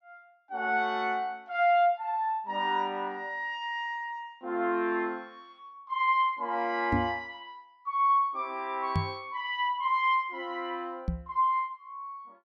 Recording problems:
knock on the microphone; at 7 s, at 9 s and at 11 s; peak +4 dB vs average level

